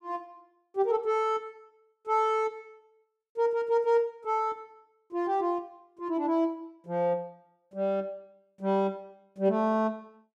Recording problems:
none

